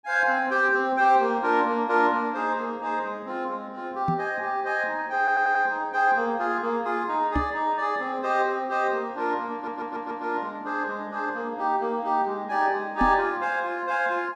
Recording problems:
microphone thump; at 4 s, at 7.5 s and at 13 s; peak +3 dB vs average level
audio stuttering; at 5 s and at 9.5 s

